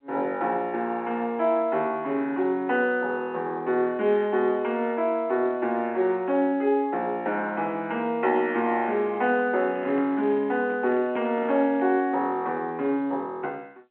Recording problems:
phone line; 190 Hz to 3.4 kHz, G.711
microphone handling noise; from 9 to 12 s; peak -9 dB vs average level

